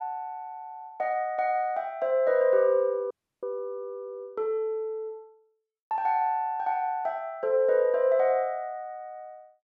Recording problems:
audio cutting out; at 3 s

